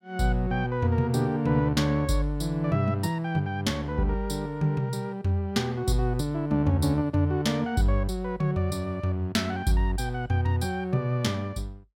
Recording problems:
none

